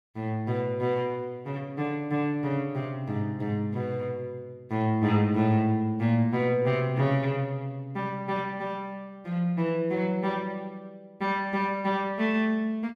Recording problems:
none

